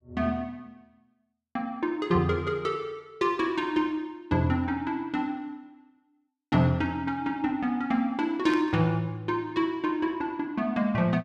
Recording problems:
static burst; at 8.5 s; peak -7 dB vs average level

